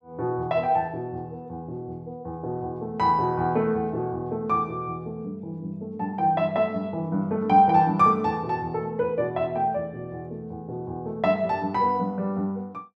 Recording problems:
none

